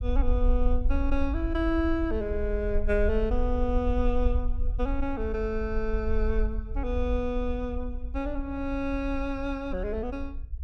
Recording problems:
low-frequency rumble; below 54 Hz, SNR 2 dB

